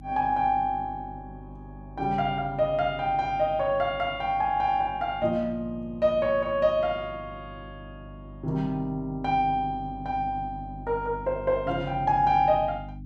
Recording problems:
hum; 50 Hz, harmonics up to 300 Hz, SNR 17 dB

